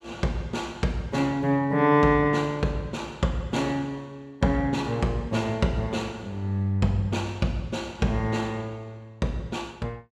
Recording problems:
none

